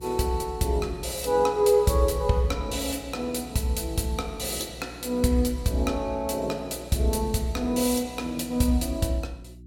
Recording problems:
electrical hum; 60 Hz, harmonics up to 360 Hz, SNR 20 dB

